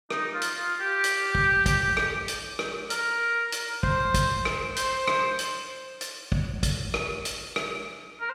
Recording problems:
none

